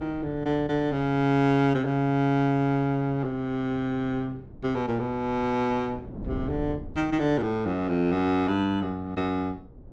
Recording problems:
wind noise; below 260 Hz, SNR 18 dB

